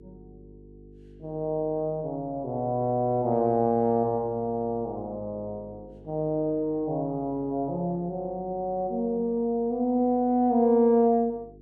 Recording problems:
electrical hum; 50 Hz, harmonics up to 450 Hz, SNR 24 dB

